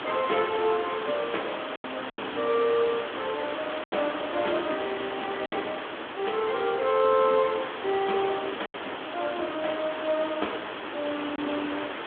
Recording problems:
phone line; 240 Hz to 3.5 kHz, Speex
background hiss; SNR 6 dB
packet loss; 3% of the sound replaced, filled with silence

